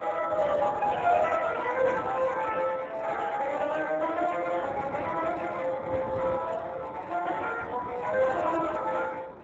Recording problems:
lossy compression; MP3, then Speex, log-spectral distance 6 dB
wind on the microphone; below 970 Hz, SNR 14 dB

